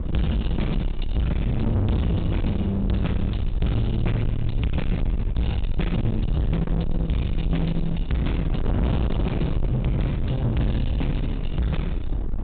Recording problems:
treble missing; nothing above 4 kHz
distorted audio; soft clipping, signal-to-distortion ratio 6 dB
low-frequency rumble; below 96 Hz, SNR 5 dB
wind on the microphone; below 240 Hz, SNR 7 dB

